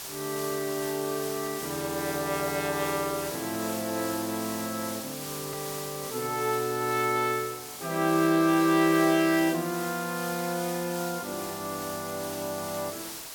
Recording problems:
hiss; slope 0 dB per octave, SNR 8 dB
edit click; at 5.5 s

